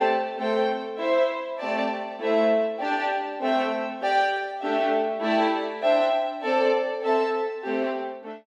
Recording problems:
none

